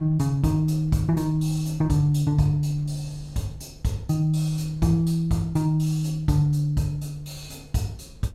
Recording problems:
wind on the microphone; below 120 Hz, SNR 23 dB

